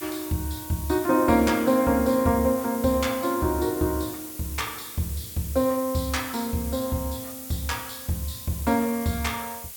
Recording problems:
hiss; slope +2 dB per octave, SNR 11 dB

